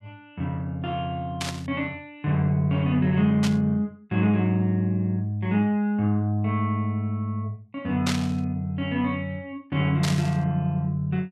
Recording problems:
burst of static; 4 times, first at 1.5 s; peak +1 dB vs average level

